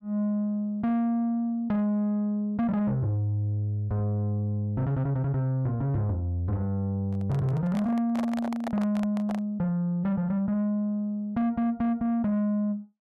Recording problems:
distortion; soft clipping, signal-to-distortion ratio 12 dB
microphone handling noise; from 7 to 9.5 s; peak -3 dB vs average level

